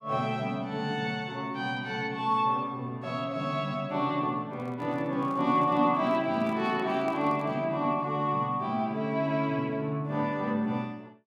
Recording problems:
handling noise; from 4.5 to 7.5 s; peak -9 dB vs average level

